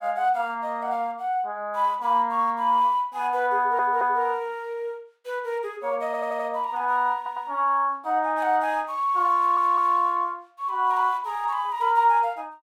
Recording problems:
stutter; 4 times, first at 3.5 s

